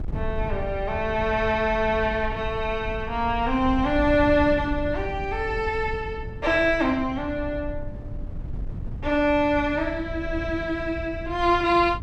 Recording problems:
wind noise; below 100 Hz, SNR 11 dB

